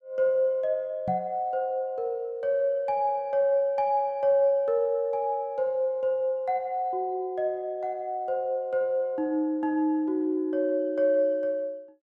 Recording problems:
microphone bump; at 1 s; peak -4 dB vs average level

